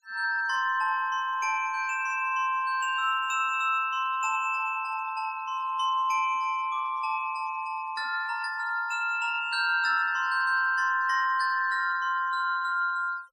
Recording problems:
noise reduction artefacts; signal-to-artefact ratio 26 dB

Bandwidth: 15 kHz